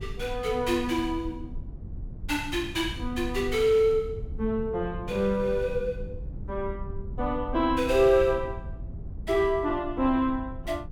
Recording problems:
rumble; below 94 Hz, SNR 12 dB

